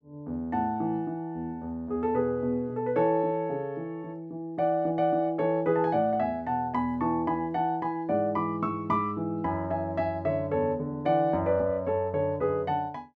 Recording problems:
none

